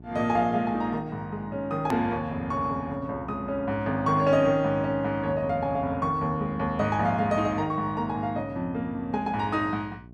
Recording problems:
hum; 60 Hz, harmonics up to 780 Hz, SNR 20 dB
hard cut with a click; at 2 s

